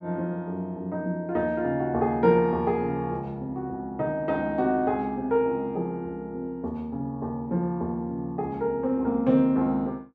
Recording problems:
none

